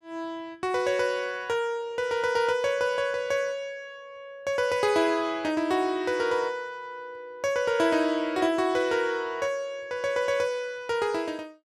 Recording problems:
none

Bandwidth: 14.5 kHz